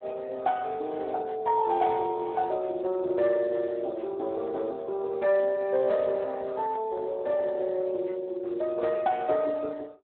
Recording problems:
telephone audio; 300 Hz to 2.2 kHz, Speex

